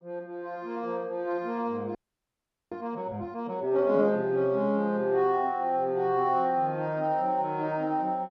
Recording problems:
frozen audio; at 2 s for 1 s

